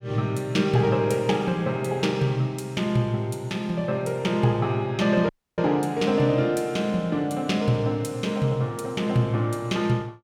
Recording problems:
audio cutting out; at 5.5 s

